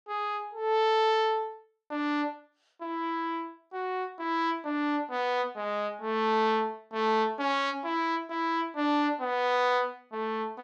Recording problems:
none

